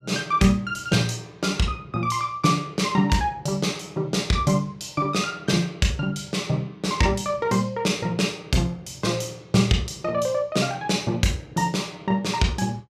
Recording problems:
none

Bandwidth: 14.5 kHz